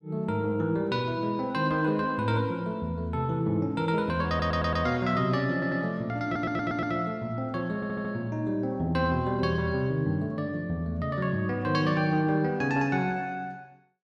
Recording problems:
audio stuttering; 4 times, first at 4.5 s

